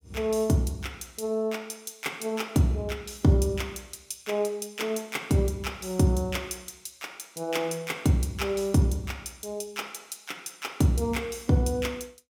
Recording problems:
none

